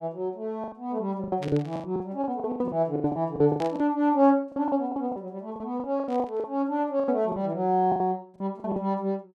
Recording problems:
packet loss; 17% of the sound replaced, filled with the last packet
static burst; at 1.5 s, at 3.5 s and at 6 s; peak -9 dB vs average level

